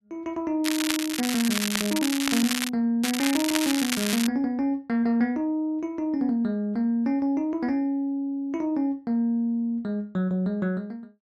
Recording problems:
crackling; from 0.5 to 2.5 s and from 3 to 4.5 s; loose cable, SNR 3 dB

